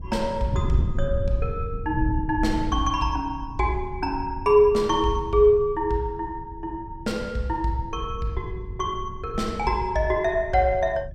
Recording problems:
wind on the microphone; below 110 Hz, SNR 9 dB

